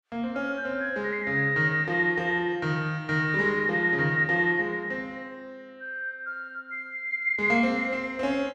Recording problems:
none

